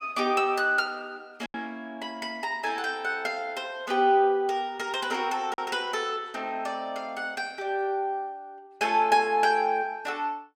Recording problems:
lost packets; 1.2% of the sound replaced, filled with silence

